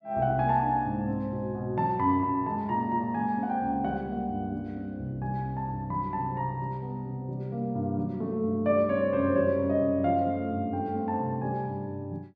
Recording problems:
none

